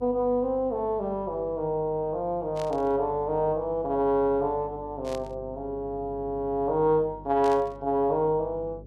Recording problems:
hum; 50 Hz, harmonics up to 600 Hz, SNR 20 dB
static burst; at 2.5 s, at 5 s and at 7.5 s; peak -11 dB vs average level

